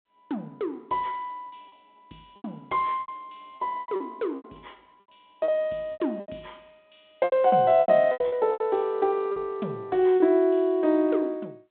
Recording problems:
phone line; 190 Hz to 3.9 kHz, G.726
lost packets; 11% of the sound replaced, filled with repeated pitch periods

